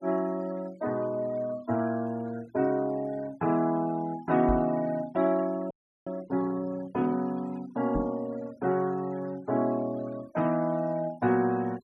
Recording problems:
noise reduction artefacts; signal-to-artefact ratio 23 dB
microphone thump; at 4.5 s and at 8 s; peak 0 dB vs average level
audio freezing; at 5.5 s

